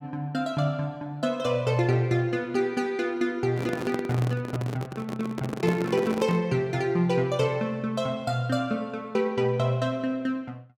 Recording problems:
microphone handling noise; from 3.5 to 6.5 s; peak +1 dB vs average level

